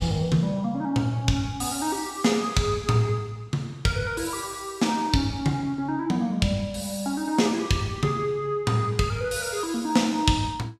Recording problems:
none

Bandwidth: 15 kHz